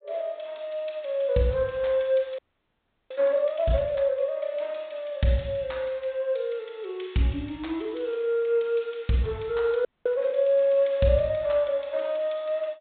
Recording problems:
treble cut off; nothing above 4 kHz
frozen audio; at 2.5 s for 0.5 s and at 10 s

